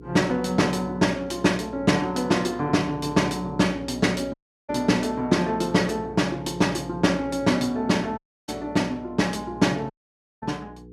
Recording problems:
hum; 60 Hz, harmonics up to 480 Hz, SNR 18 dB
dropout; at 4.5 s, at 8 s and at 10 s for 0.5 s

